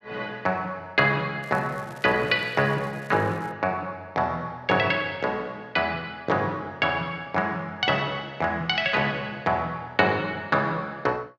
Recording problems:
crackle; from 1.5 to 3.5 s; loose cable, SNR 27 dB

